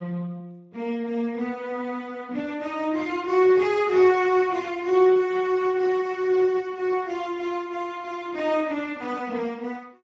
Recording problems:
lossy codec; Speex, log-spectral distance 3 dB

